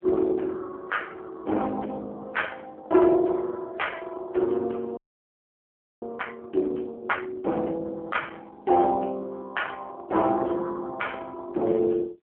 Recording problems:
telephone audio; 280 Hz to 2.6 kHz, AMR-NB
distortion; hard clipping, signal-to-distortion ratio 16 dB
audio freezing; at 5 s for 1 s

